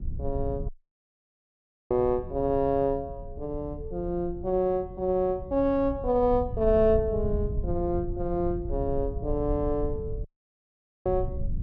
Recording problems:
rumble; below 94 Hz, SNR 9 dB
audio cutting out; at 0.5 s for 1 s and at 10 s for 1 s

